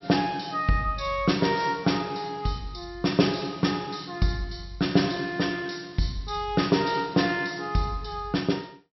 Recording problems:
treble missing; nothing above 5.6 kHz

